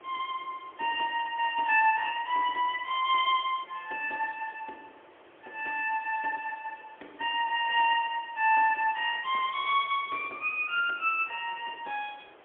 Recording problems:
telephone audio; 300 Hz to 3.4 kHz, AMR-NB, then MP3
hiss; SNR 26 dB

